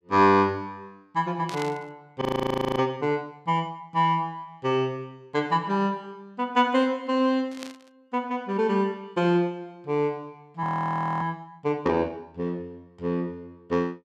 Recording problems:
burst of static; at 1.5 s and at 7.5 s; peak -7 dB vs average level
frozen audio; at 2 s for 0.5 s and at 11 s for 0.5 s

